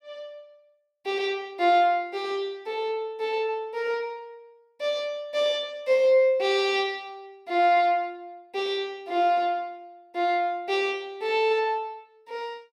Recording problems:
none

